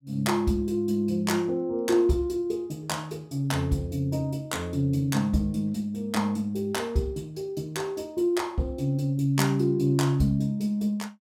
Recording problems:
none

